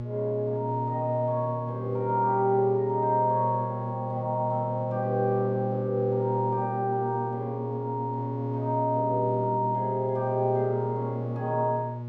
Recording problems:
mains hum; 60 Hz, harmonics up to 840 Hz, SNR 6 dB

